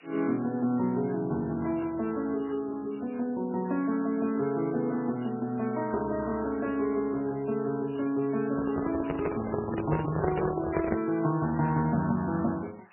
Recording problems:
lossy compression; MP3, then MP3, log-spectral distance 16 dB, nothing above 2.5 kHz
background hiss; SNR 25 dB
microphone handling noise; from 8.5 to 11 s; peak +3 dB vs average level

